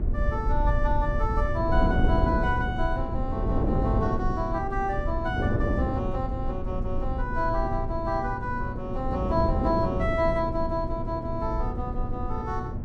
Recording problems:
hum; 60 Hz, harmonics up to 1.4 kHz, SNR 10 dB
rumble; below 60 Hz, SNR 5 dB
wind noise; below 280 Hz, SNR 2 dB

